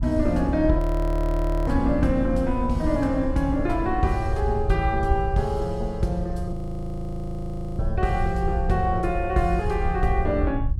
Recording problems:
rumble; below 80 Hz, SNR 8 dB
wind noise; below 86 Hz, SNR 8 dB
audio freezing; at 1 s for 1 s and at 6.5 s for 1.5 s

